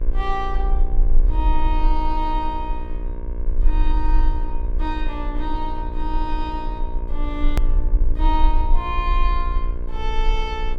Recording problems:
mains hum; 60 Hz, harmonics up to 2.2 kHz, SNR 9 dB
rumble; below 40 Hz, strongest tone 22 Hz, SNR -4 dB
click at an edit; at 7.5 s

